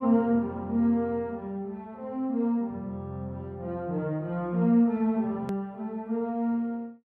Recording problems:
edit click; at 5.5 s

